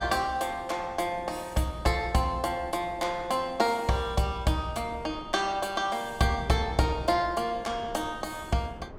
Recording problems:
wind noise; below 490 Hz, SNR 19 dB

